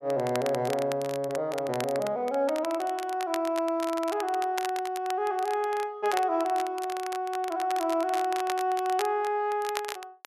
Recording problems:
crackle; vinyl, SNR 12 dB

